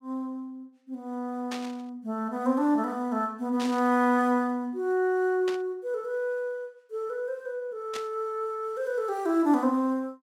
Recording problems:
burst of static; 4 times, first at 1.5 s; peak -5 dB vs average level

